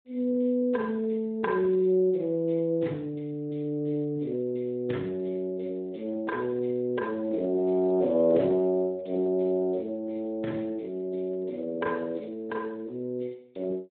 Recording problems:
telephone audio; 190 Hz to 3.6 kHz, Speex

